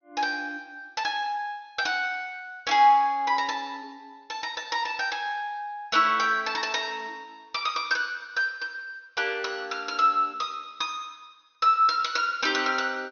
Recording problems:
low-pass filter; nothing above 6.4 kHz

